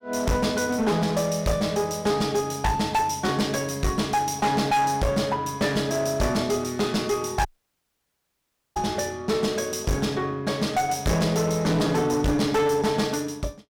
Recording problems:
distortion; hard clipping, uneven, signal-to-distortion ratio 7 dB
dropout; at 7.5 s for 1.5 s

